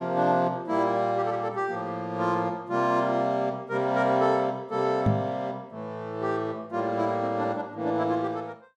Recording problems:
microphone thump; at 5 s; peak +6 dB vs average level

